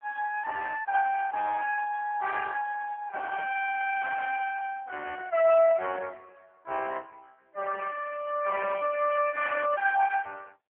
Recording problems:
phone line; 340 Hz to 2.9 kHz, AMR-NB

